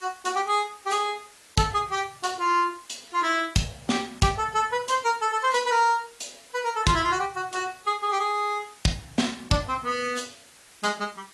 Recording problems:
lossy codec; AAC, log-spectral distance 8 dB, nothing above 11.3 kHz
background hiss; slope 0 dB per octave, SNR 24 dB

